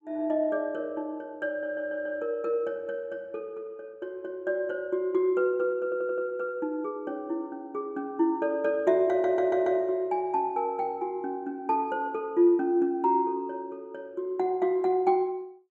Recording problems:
audio stuttering; at 1.5 s, at 6 s and at 9 s

